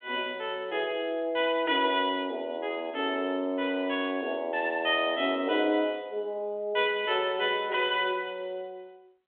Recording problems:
phone line; 240 Hz to 3.5 kHz, G.726

